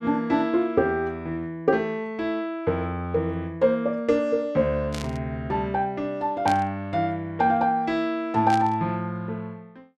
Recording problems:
static burst; at 5 s, at 6.5 s and at 8.5 s; peak -5 dB vs average level

